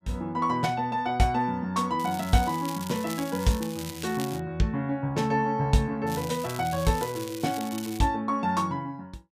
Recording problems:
crackle; from 2 to 4.5 s and from 6 to 8 s; loose cable, SNR 13 dB

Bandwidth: 15 kHz